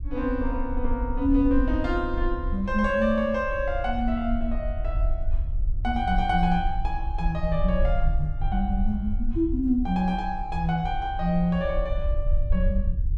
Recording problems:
low-frequency rumble; below 56 Hz, SNR 4 dB

